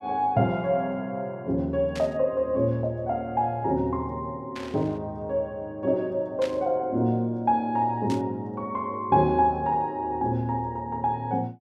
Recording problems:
static burst; 4 times, first at 2 s; peak -7 dB vs average level

